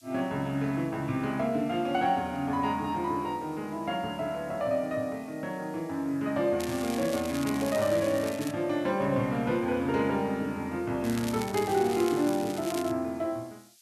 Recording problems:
hiss; slope +8 dB per octave, SNR 27 dB
crackling; from 6.5 to 8.5 s and from 11 to 13 s; loose cable, SNR 12 dB

